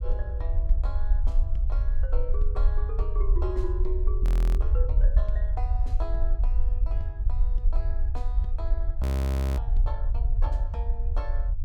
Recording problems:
rumble; below 56 Hz, SNR -13 dB
audio freezing; at 4 s and at 9 s for 0.5 s

